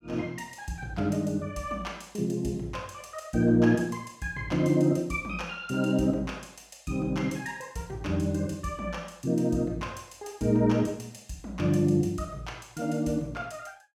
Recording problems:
none

